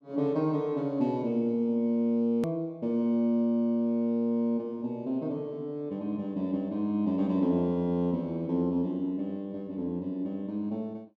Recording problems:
click at an edit; at 2.5 s

